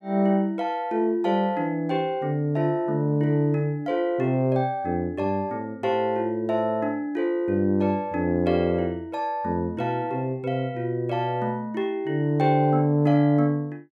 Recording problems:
none

